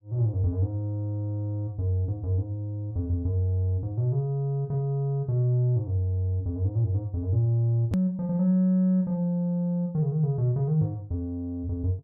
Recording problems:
click at an edit; at 8 s

